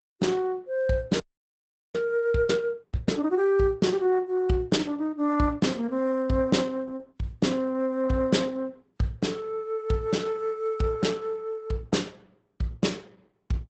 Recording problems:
lossy compression; Opus, log-spectral distance 2 dB, nothing above 8 kHz
audio freezing; at 1 s for 0.5 s

